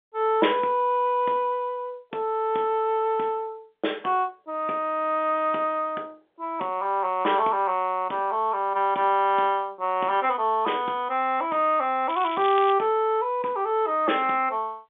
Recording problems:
phone line; 280 Hz to 3.6 kHz, G.711
crackle; at 12 s; loose cable, SNR 15 dB

